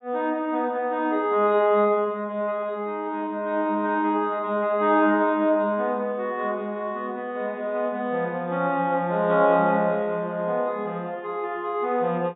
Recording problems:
treble missing; nothing above 4 kHz

